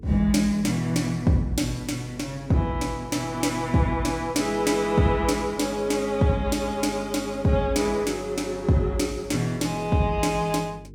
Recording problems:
electrical hum; 50 Hz, harmonics up to 450 Hz, SNR 19 dB

